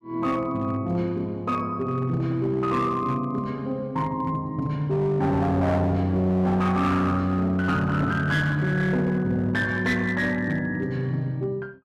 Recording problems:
distorted audio; hard clipping, signal-to-distortion ratio 11 dB

